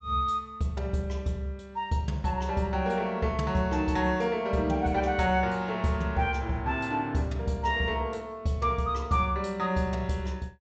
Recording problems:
low-pass filter; nothing above 8 kHz

